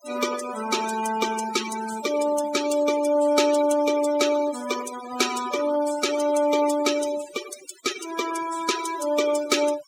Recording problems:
noise reduction artefacts; signal-to-artefact ratio 10 dB

